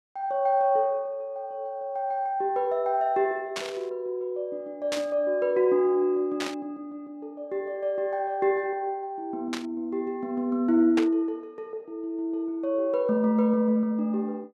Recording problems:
static burst; 5 times, first at 3.5 s; peak -1 dB vs average level

